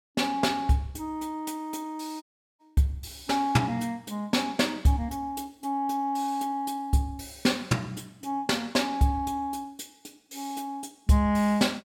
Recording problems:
dropout; at 2 s

